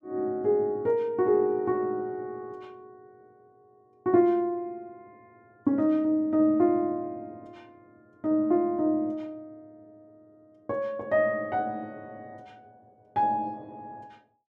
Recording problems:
none

